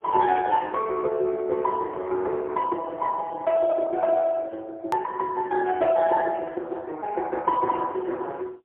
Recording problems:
telephone audio; 320 Hz to 3.3 kHz, AMR-NB, then MP3
hard cut with a click; at 5 s

